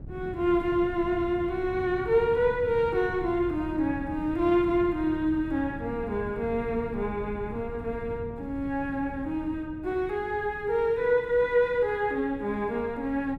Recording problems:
wind noise; below 190 Hz, SNR 14 dB

